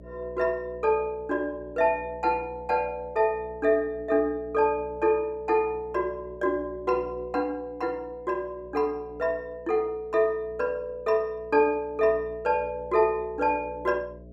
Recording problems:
mains hum; 60 Hz, harmonics up to 660 Hz, SNR 21 dB

